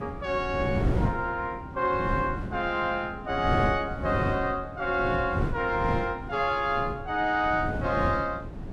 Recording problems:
wind noise; below 280 Hz, SNR 6 dB

